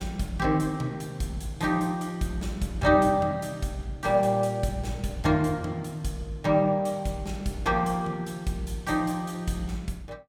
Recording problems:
none

